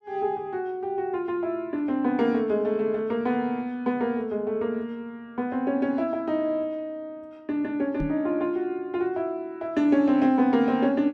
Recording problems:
knock on the microphone; at 8 s; peak 0 dB vs average level

